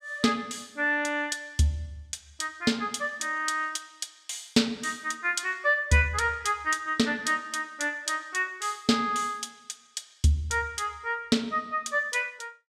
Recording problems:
none

